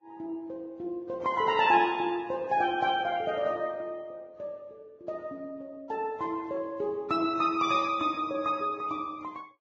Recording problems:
lossy compression; AAC, then Vorbis, log-spectral distance 2 dB

